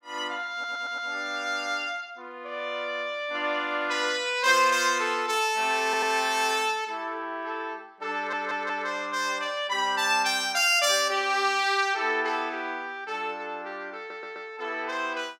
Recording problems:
audio stuttering; 4 times, first at 0.5 s

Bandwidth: 16 kHz